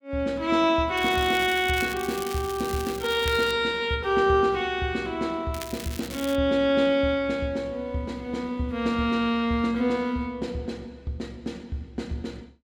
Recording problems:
crackling; from 1 to 3.5 s and at 5.5 s; loose cable, SNR 13 dB

